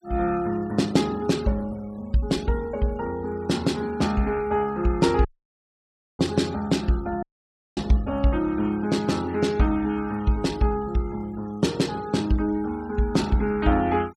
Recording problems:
noise reduction artefacts; signal-to-artefact ratio 24 dB
dropout; at 5.5 s for 1 s and at 7 s for 0.5 s

